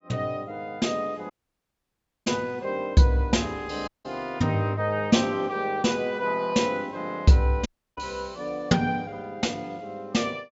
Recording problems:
low-pass filter; nothing above 8 kHz
audio cutting out; at 1.5 s for 1 s, at 4 s and at 7.5 s

